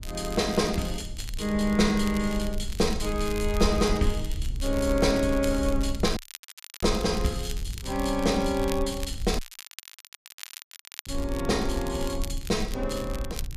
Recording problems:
low-frequency rumble; below 66 Hz, SNR 8 dB
crackling; vinyl, SNR 15 dB
audio cutting out; at 6 s for 0.5 s and at 9.5 s for 1.5 s

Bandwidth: 14.5 kHz